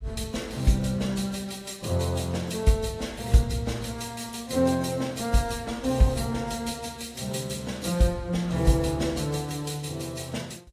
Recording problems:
lossy codec; AAC, log-spectral distance 4 dB, nothing above 15.1 kHz

